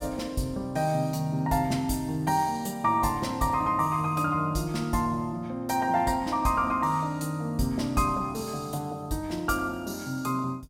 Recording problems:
none

